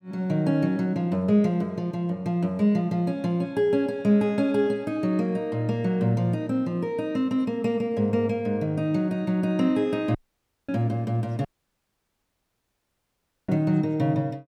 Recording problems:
audio cutting out; at 10 s for 0.5 s and at 11 s for 2 s

